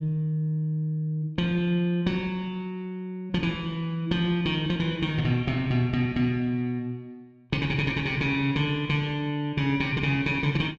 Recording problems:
none

